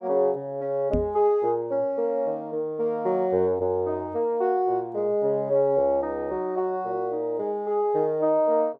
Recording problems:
microphone bump; at 1 s; peak +1 dB vs average level

